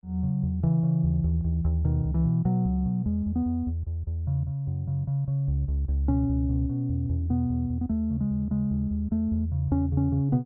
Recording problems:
none

